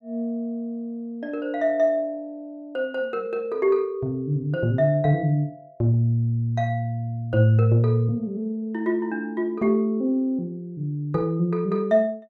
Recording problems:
none

